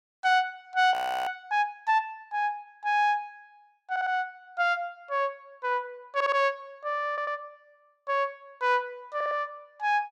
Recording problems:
audio freezing; at 1 s
stutter; 4 times, first at 4 s

